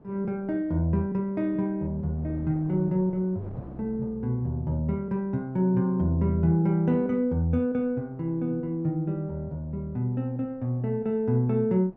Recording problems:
wind noise; below 460 Hz, SNR 24 dB

